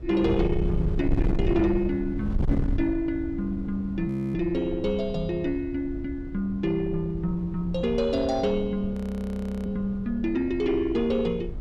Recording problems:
distortion; soft clipping, signal-to-distortion ratio 12 dB
wind noise; below 130 Hz, SNR 7 dB
frozen audio; at 4 s and at 9 s for 0.5 s

